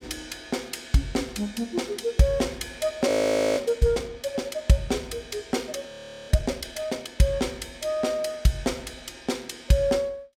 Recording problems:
audio freezing; at 3 s and at 6 s

